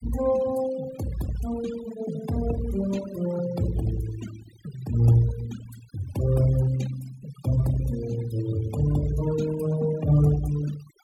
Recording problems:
denoising artefacts; signal-to-artefact ratio 16 dB

